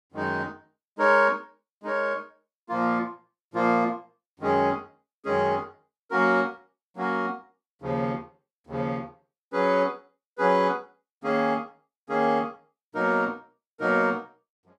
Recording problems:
none

